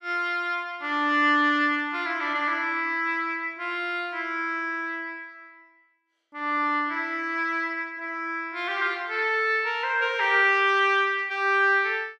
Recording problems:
none

